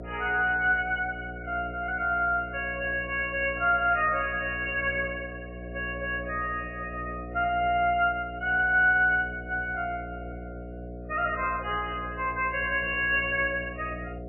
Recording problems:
codec artefacts; MP3, log-spectral distance 3 dB, nothing above 2.7 kHz
mains hum; 60 Hz, harmonics up to 720 Hz, SNR 13 dB

